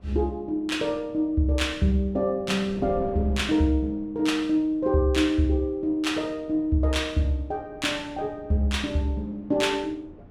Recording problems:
wind on the microphone; below 330 Hz, SNR 20 dB

